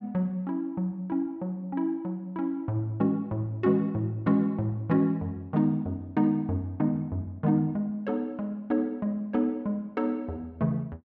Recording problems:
none

